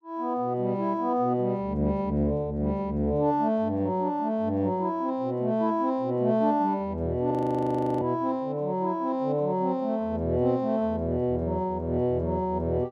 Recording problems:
frozen audio; at 7.5 s for 0.5 s

